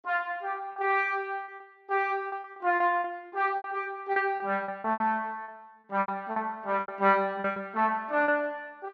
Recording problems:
packet loss; 12% of the sound replaced, filled with repeated pitch periods

